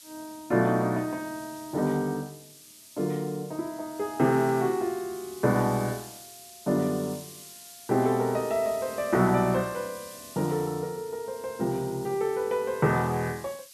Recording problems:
hiss; SNR 18 dB

